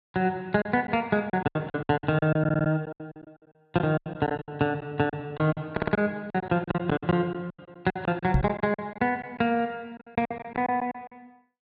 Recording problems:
packet loss; 16% of the sound replaced, filled with silence
stutter; at 2.5 s and at 5.5 s
microphone thump; at 8.5 s; peak +7 dB vs average level

